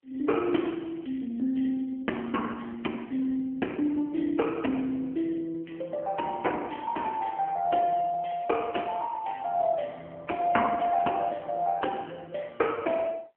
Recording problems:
telephone audio; 220 Hz to 3.2 kHz, AMR-NB

